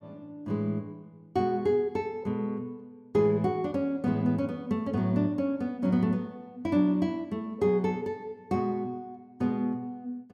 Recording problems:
none

